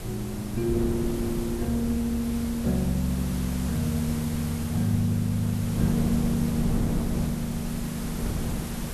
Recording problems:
background hiss; slope -3 dB per octave, SNR 11 dB
wind noise; below 230 Hz, SNR 6 dB

